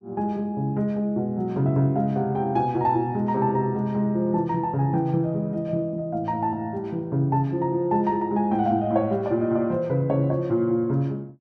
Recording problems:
none

